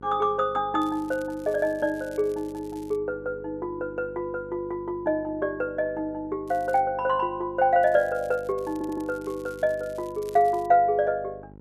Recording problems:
electrical hum; 50 Hz, harmonics up to 1 kHz, SNR 21 dB
crackle; from 1 to 3 s, at 6.5 s and from 8 to 11 s; loose cable, SNR 27 dB
stutter; at 8.5 s

